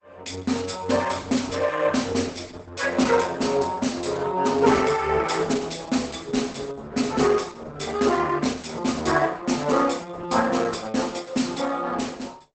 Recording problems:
lossy codec; Opus, log-spectral distance 6 dB, nothing above 8 kHz

